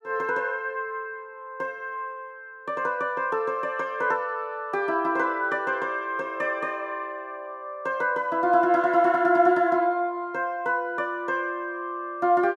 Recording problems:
none

